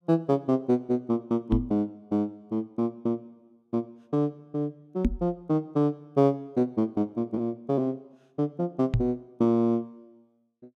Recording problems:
knock on the microphone; at 1.5 s, at 5 s and at 9 s; peak +7 dB vs average level

